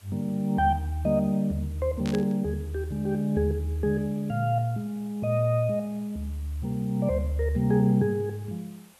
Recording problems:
background hiss; slope -2 dB per octave, SNR 27 dB
burst of static; at 2 s; peak -8 dB vs average level

